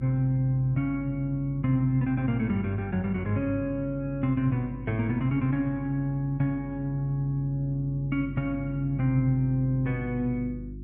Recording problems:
hum; 50 Hz, harmonics up to 350 Hz, SNR 14 dB

